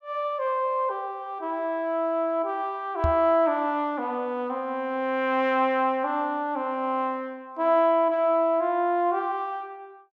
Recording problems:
knock on the microphone; at 3 s; peak +2 dB vs average level

